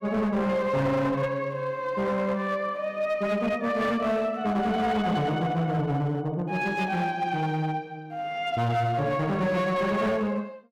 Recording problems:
distortion; hard clipping, signal-to-distortion ratio 10 dB

